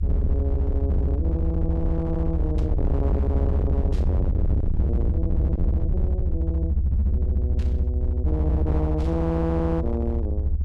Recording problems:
distortion; hard clipping, uneven, signal-to-distortion ratio 8 dB
rumble; below 78 Hz, SNR -5 dB
static burst; 4 times, first at 2.5 s; peak -13 dB vs average level

